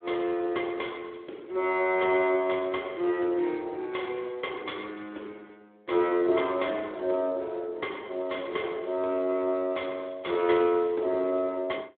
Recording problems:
phone line; 280 Hz to 3.6 kHz, Speex

